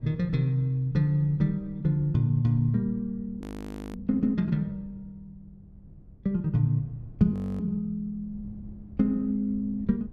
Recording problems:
wind on the microphone; below 140 Hz, SNR 21 dB
frozen audio; at 3.5 s for 0.5 s and at 7.5 s

